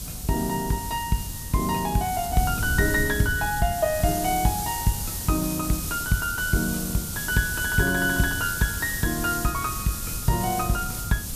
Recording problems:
hiss; SNR 6 dB
wind noise; below 140 Hz, SNR 11 dB

